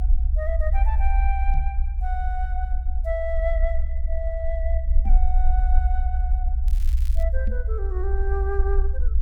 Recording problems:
low-frequency rumble; below 62 Hz, SNR -8 dB
knock on the microphone; at 1.5 s, at 5 s and at 7.5 s; peak 0 dB vs average level
crackling; at 6.5 s; loose cable, SNR 17 dB

